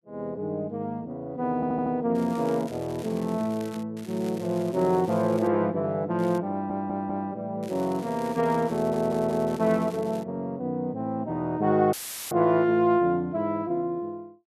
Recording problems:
stutter; at 1.5 s, at 6.5 s and at 9 s
crackling; 4 times, first at 2 s; loose cable, SNR 22 dB
dropout; at 12 s; filled with static

